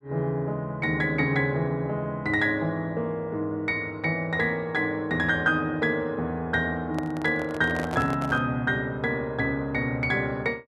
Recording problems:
handling noise; from 7 to 8.5 s; peak -4 dB vs average level

